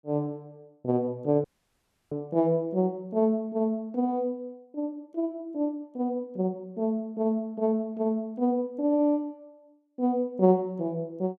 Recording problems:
audio cutting out; at 1.5 s for 0.5 s

